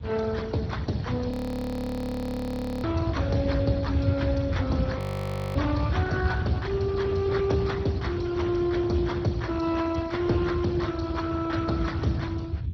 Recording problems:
lossy codec; MP2, then Speex, log-spectral distance 3 dB, nothing above 19.5 kHz
rumble; below 130 Hz, SNR 4 dB
frozen audio; at 1.5 s for 1.5 s and at 5 s for 0.5 s

